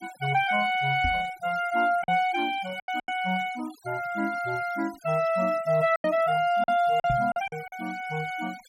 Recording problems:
noise reduction artefacts; signal-to-artefact ratio 22 dB
packet loss; 6% of the sound replaced, filled with silence
microphone thump; at 1 s and at 7 s; peak -2 dB vs average level

